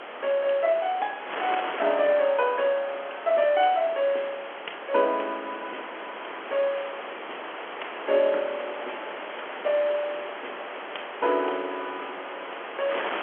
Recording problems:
telephone audio; 300 Hz to 3.4 kHz, G.711
wind on the microphone; below 2.2 kHz, SNR 10 dB

